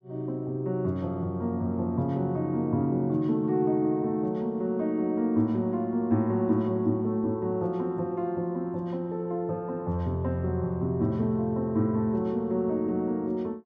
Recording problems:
none

